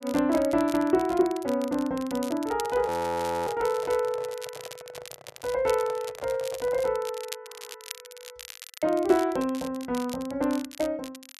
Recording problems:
crackling; vinyl, SNR 16 dB
handling noise; from 2.5 to 7 s; peak -10 dB vs average level
audio freezing; at 3 s for 0.5 s and at 7.5 s

